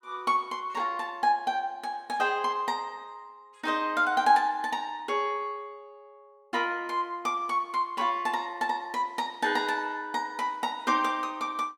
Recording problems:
none

